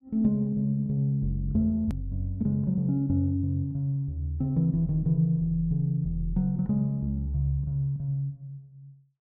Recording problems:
hard cut with a click; at 2 s

